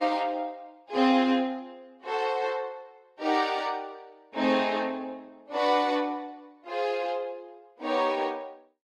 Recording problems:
codec artefacts; Opus, log-spectral distance 2 dB

